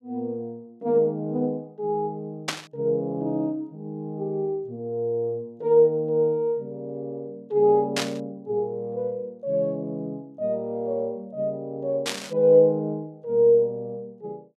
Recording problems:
static burst; at 2.5 s, at 8 s and at 12 s; peak +3 dB vs average level

